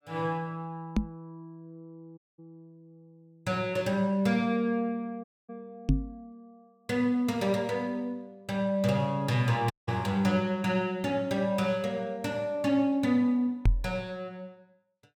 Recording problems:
microphone thump; at 1 s, at 6 s and at 14 s; peak +7 dB vs average level
dropout; at 2 s, at 5 s and at 9.5 s

